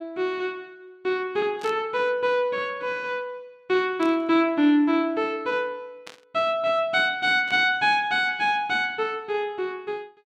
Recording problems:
static burst; 4 times, first at 1.5 s; peak -13 dB vs average level

